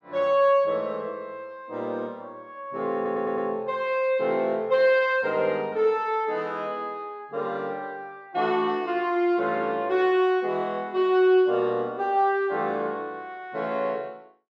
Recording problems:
audio stuttering; at 3 s

